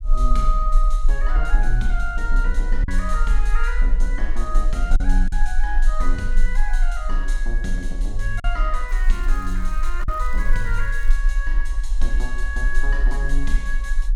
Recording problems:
low-frequency rumble; below 38 Hz, strongest tone 18 Hz, SNR -5 dB
lost packets; 1.4% of the sound replaced, filled with silence
crackle; from 9 to 11 s; loose cable, SNR 23 dB

